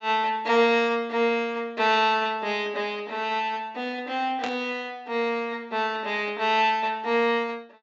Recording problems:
treble cut off; nothing above 8 kHz
static burst; at 4.5 s; peak -4 dB vs average level

